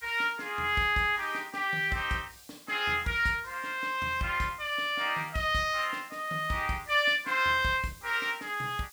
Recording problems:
hiss; SNR 23 dB

